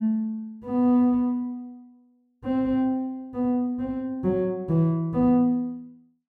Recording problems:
none

